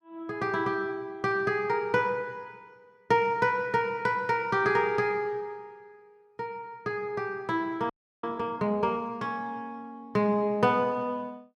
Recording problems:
frozen audio; at 8 s

